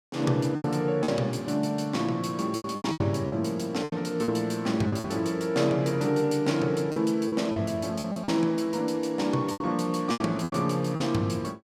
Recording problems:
lost packets; 10% of the sound replaced, filled with repeated pitch periods

